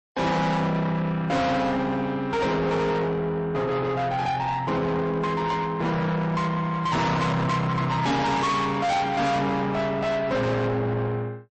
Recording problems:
lossy compression; MP3, log-spectral distance 2 dB, nothing above 8.2 kHz
distortion; soft clipping, signal-to-distortion ratio 6 dB

